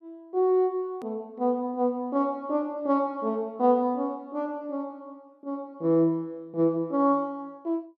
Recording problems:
hard cut with a click; at 1 s

